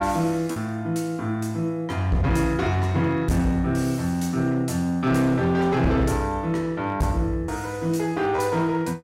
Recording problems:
distorted audio; hard clipping, uneven, signal-to-distortion ratio 11 dB
lost packets; 0.9% of the sound replaced, filled with repeated pitch periods

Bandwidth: 16 kHz